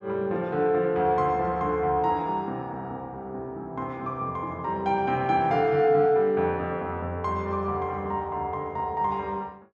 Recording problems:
none

